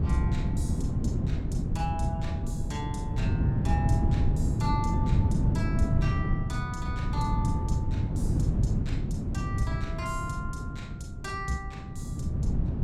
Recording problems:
wind on the microphone; below 160 Hz, SNR -8 dB

